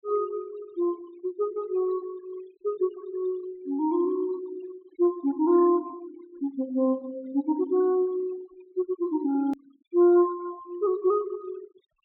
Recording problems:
low-pass filter; nothing above 4 kHz
noise reduction artefacts; signal-to-artefact ratio 25 dB
hard cut with a click; at 9.5 s

